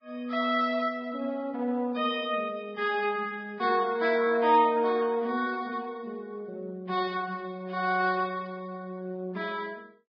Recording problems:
codec artefacts; Vorbis, log-spectral distance 2 dB, nothing above 5.2 kHz

